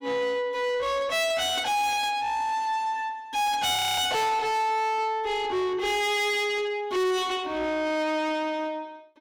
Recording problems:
distorted audio; soft clipping, signal-to-distortion ratio 7 dB
audio freezing; at 4 s

